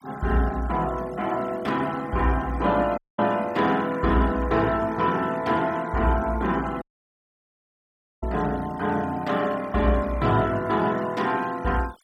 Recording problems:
noise reduction artefacts; signal-to-artefact ratio 21 dB
audio cutting out; at 3 s and at 7 s for 1.5 s

